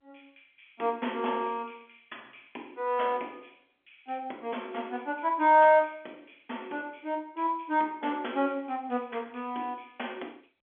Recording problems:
telephone audio; 240 Hz to 3.4 kHz, G.711

